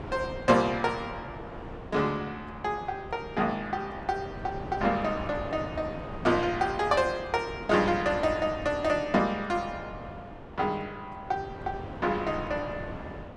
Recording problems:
wind noise; below 700 Hz, SNR 12 dB

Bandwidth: 12.5 kHz